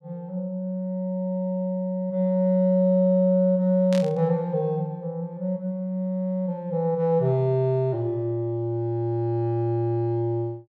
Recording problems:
burst of static; at 4 s; peak -8 dB vs average level

